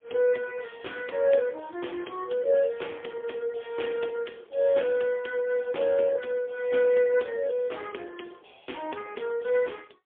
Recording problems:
telephone audio; 300 Hz to 3.4 kHz, AMR-NB, then MP3

